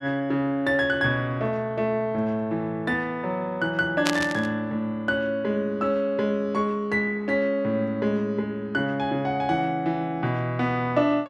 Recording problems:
burst of static; at 4 s; peak +4 dB vs average level

